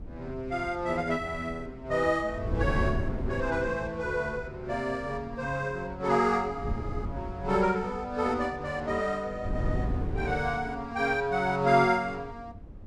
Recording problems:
wind noise; below 180 Hz, SNR 9 dB

